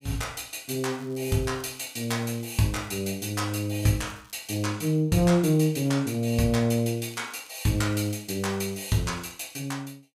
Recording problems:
crackle; 4 times, first at 0.5 s; loose cable, SNR 27 dB

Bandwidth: 15.5 kHz